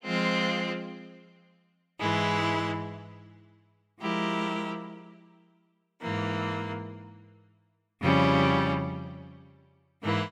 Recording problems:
none

